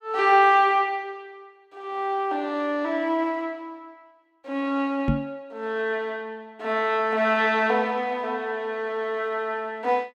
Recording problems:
knock on the microphone; at 5 s; peak +5 dB vs average level

